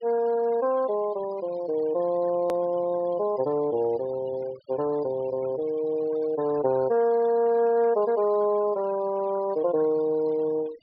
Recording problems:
treble cut off; nothing above 5.5 kHz
denoising artefacts; signal-to-artefact ratio 22 dB
edit click; at 2.5 s

